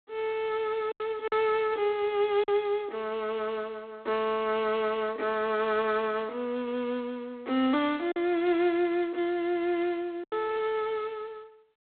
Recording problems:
phone line; 260 Hz to 3.8 kHz, G.726
lost packets; 2% of the sound replaced, filled with silence

